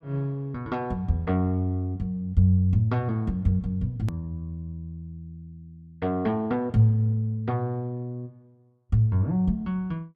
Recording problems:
edit click; at 4 s

